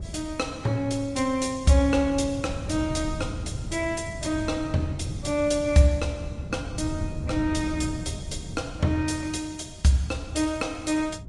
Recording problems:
lossy codec; Vorbis, log-spectral distance 3 dB, nothing above 10.4 kHz
wind on the microphone; below 160 Hz, SNR 10 dB

